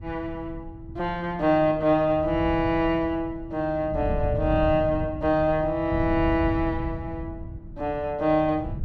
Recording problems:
wind on the microphone; below 130 Hz, SNR 10 dB

